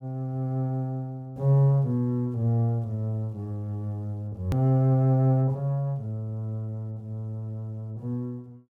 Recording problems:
hard cut with a click; at 4.5 s

